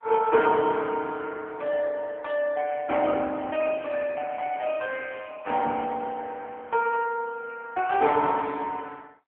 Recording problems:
telephone audio; 240 Hz to 3.5 kHz, AMR-NB

